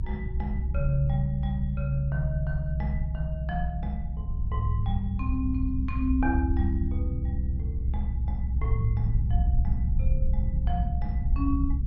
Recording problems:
low-frequency rumble; below 66 Hz, SNR -2 dB

